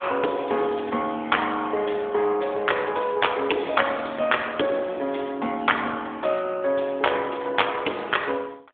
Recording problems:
telephone audio; 240 Hz to 3.5 kHz, AMR-NB

